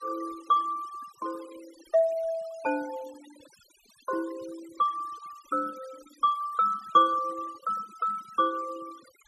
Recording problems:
denoising artefacts; signal-to-artefact ratio 21 dB

